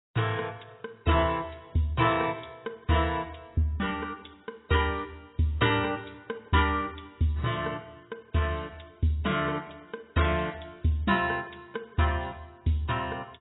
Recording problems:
lossy compression; AAC, log-spectral distance 5 dB, nothing above 3.4 kHz

